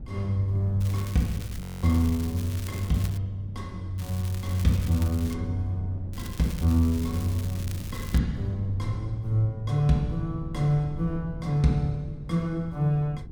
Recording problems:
wind noise; below 150 Hz, SNR 12 dB
crackle; from 1 to 3 s, from 4 to 5.5 s and from 6 to 8 s; loose cable, SNR 16 dB
audio freezing; at 1.5 s

